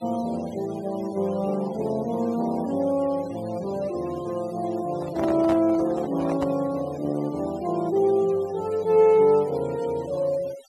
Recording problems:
noise reduction artefacts; signal-to-artefact ratio 22 dB
handling noise; from 5 to 6.5 s; peak -4 dB vs average level

